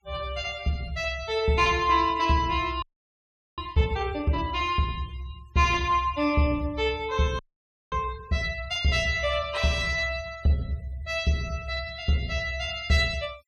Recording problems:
noise reduction artefacts; signal-to-artefact ratio 23 dB
audio freezing; at 3 s for 1 s and at 7.5 s for 0.5 s

